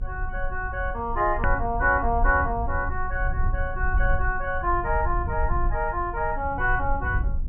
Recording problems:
treble missing; nothing above 3 kHz
rumble; below 60 Hz, SNR 5 dB
hard cut with a click; at 1.5 s

